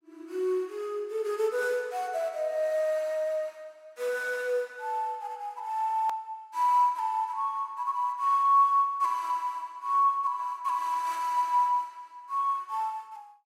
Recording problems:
click at an edit; at 6 s

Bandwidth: 16 kHz